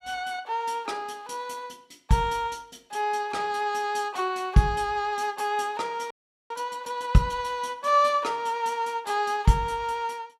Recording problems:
frozen audio; at 6 s

